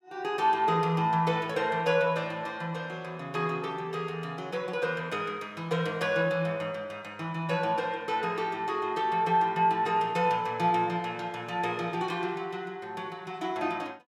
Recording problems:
none

